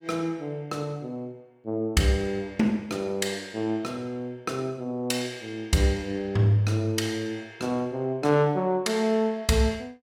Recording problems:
none

